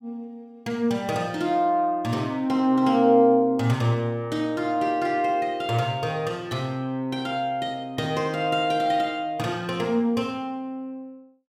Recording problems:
none

